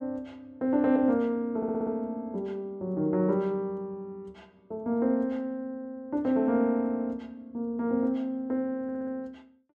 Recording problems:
audio stuttering; at 1.5 s and at 9 s

